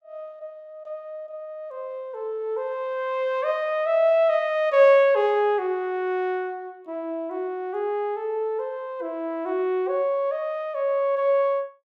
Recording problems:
none

